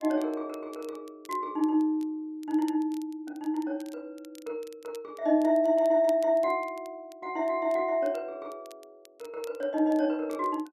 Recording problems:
crackling; vinyl, SNR 27 dB

